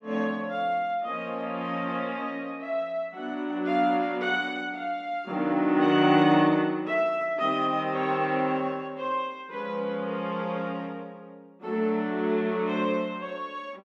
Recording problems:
none

